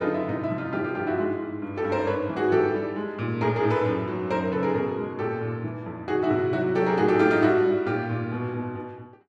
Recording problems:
none

